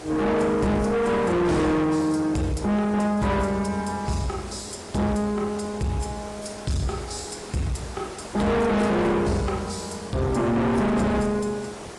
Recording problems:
codec artefacts; AAC, log-spectral distance 5 dB, nothing above 10.7 kHz
distortion; soft clipping, signal-to-distortion ratio 6 dB
background hiss; slope -5 dB per octave, SNR 16 dB

